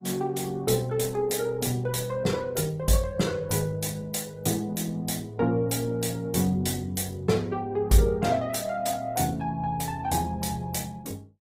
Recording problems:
lossy codec; Opus, log-spectral distance 4 dB, nothing above 15.5 kHz

